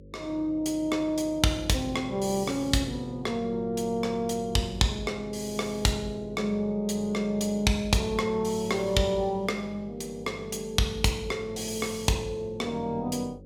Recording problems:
hum; 50 Hz, harmonics up to 550 Hz, SNR 19 dB

